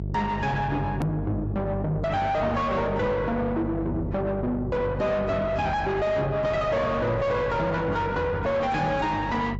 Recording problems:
lossy codec; AAC, log-spectral distance 2 dB, nothing above 13.1 kHz
distortion; soft clipping, signal-to-distortion ratio 6 dB
hum; 50 Hz, harmonics up to 650 Hz, SNR 7 dB
edit click; at 1 s

